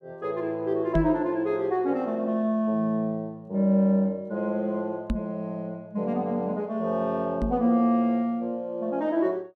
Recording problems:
knock on the microphone; at 1 s, at 5 s and at 7.5 s; peak +3 dB vs average level

